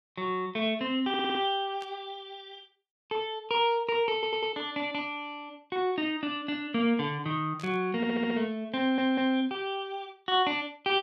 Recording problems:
audio stuttering; 4 times, first at 1 s
burst of static; at 2 s and at 7.5 s; peak -14 dB vs average level

